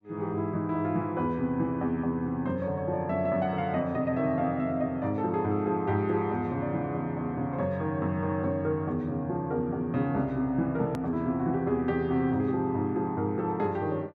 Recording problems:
edit click; at 11 s

